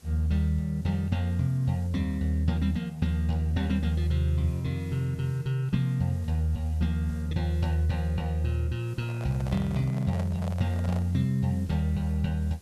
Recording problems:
background hiss; SNR 27 dB
handling noise; from 9 to 11 s; peak -8 dB vs average level

